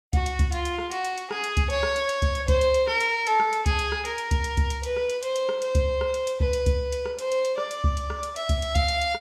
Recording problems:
none

